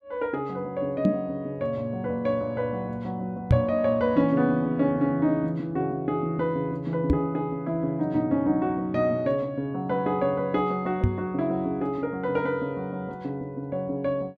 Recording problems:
knock on the microphone; 4 times, first at 1 s; peak +9 dB vs average level

